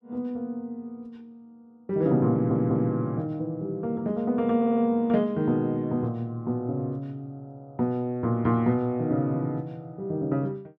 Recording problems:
audio stuttering; at 2.5 s and at 4.5 s

